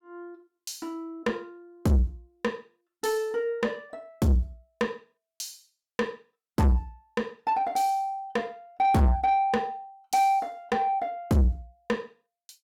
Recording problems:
distorted audio; soft clipping, signal-to-distortion ratio 6 dB

